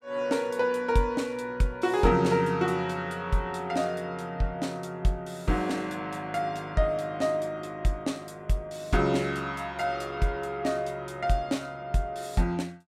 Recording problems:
none

